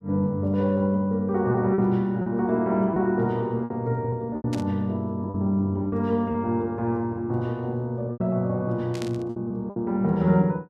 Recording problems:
packet loss; 6% of the sound replaced, filled with repeated pitch periods
static burst; at 4.5 s and at 9 s; peak -8 dB vs average level

